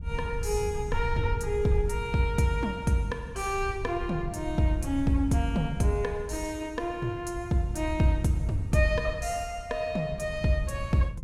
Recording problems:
wind on the microphone; below 86 Hz, SNR 9 dB

